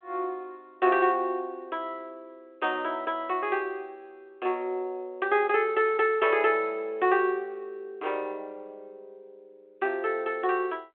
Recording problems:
telephone audio; 320 Hz to 3.5 kHz, G.726

